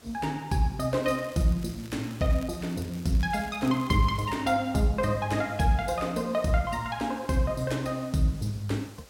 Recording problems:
background hiss; slope -2 dB per octave, SNR 24 dB
crackling; from 1 to 4.5 s; loose cable, SNR 22 dB

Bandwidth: 16.5 kHz